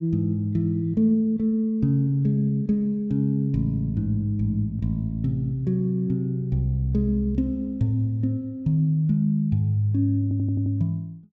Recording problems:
stutter; at 10 s

